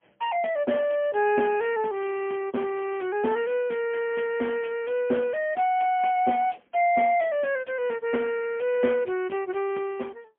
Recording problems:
phone line; 220 Hz to 3.1 kHz, AMR-NB, then MP3

